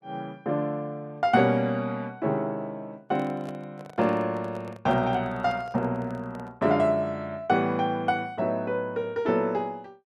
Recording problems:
microphone handling noise; from 3 to 6.5 s; peak -11 dB vs average level

